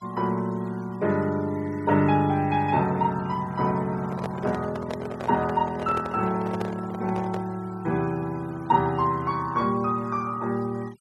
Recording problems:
noise reduction artefacts; signal-to-artefact ratio 23 dB
handling noise; from 4 to 7.5 s; peak -3 dB vs average level

